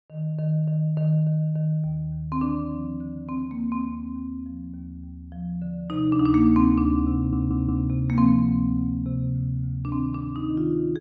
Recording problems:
audio stuttering; at 7 s

